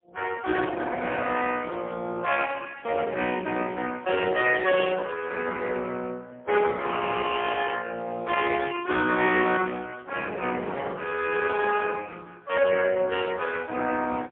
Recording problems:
phone line; 150 Hz to 3.3 kHz, AMR-NB, then MP3

